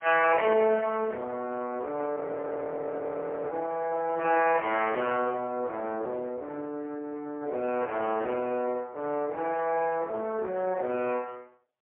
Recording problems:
phone line; 260 Hz to 3.1 kHz, AMR-NB, then MP3
audio freezing; at 2 s for 1.5 s

